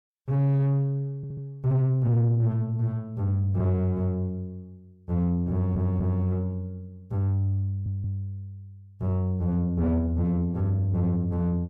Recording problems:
distortion; soft clipping, signal-to-distortion ratio 9 dB
audio stuttering; at 1 s, at 5.5 s and at 7.5 s

